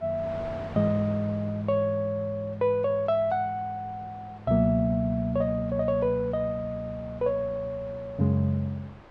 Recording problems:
wind on the microphone; below 1.2 kHz, SNR 20 dB

